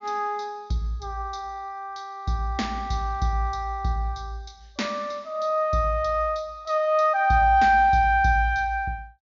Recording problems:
treble missing; nothing above 7.1 kHz

